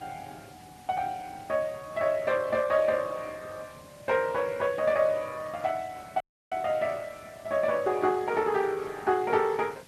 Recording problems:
lossy compression; Opus, log-spectral distance 4 dB
hiss; slope -2 dB per octave, SNR 23 dB
audio cutting out; at 6 s

